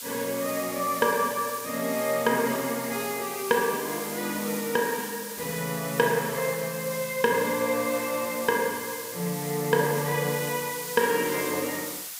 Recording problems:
hiss; slope +4 dB per octave, SNR 8 dB

